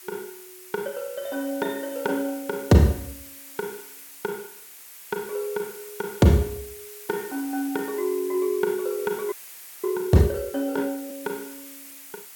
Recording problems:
hiss; SNR 14 dB
audio freezing; at 9.5 s for 0.5 s

